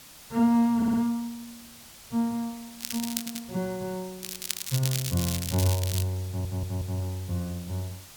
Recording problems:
background hiss; slope 0 dB per octave, SNR 17 dB
audio stuttering; at 1 s, at 3 s and at 6.5 s
crackling; at 3 s and from 4 to 6 s; loose cable, SNR 4 dB

